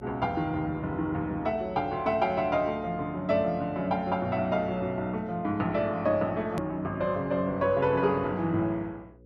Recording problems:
hum; 60 Hz, harmonics up to 540 Hz, SNR 23 dB
edit click; at 6.5 s

